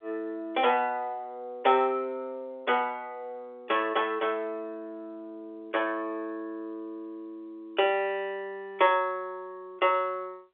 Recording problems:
phone line; 340 Hz to 3.7 kHz, G.711

